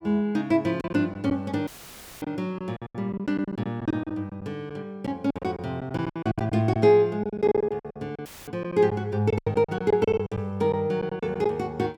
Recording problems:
packet loss; 14% of the sound replaced, filled with silence
audio cutting out; at 1.5 s for 0.5 s and at 8.5 s; filled with static

